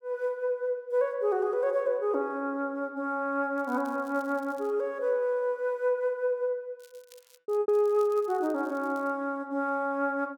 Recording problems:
packet loss; 1% of the sound replaced, filled with repeated pitch periods
crackle; from 3.5 to 4.5 s and from 7 to 9 s; loose cable, SNR 28 dB

